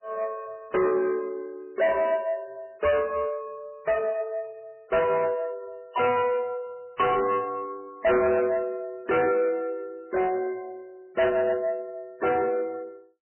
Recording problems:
lossy compression; MP3, log-spectral distance 2 dB, nothing above 3 kHz
distortion; soft clipping, signal-to-distortion ratio 8 dB

